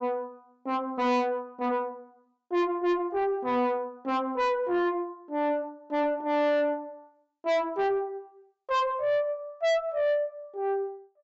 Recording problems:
treble cut off; nothing above 7.6 kHz
distorted audio; soft clipping, signal-to-distortion ratio 6 dB

